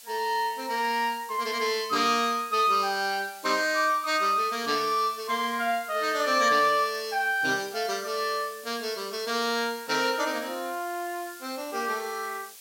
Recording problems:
background hiss; slope +3 dB per octave, SNR 18 dB

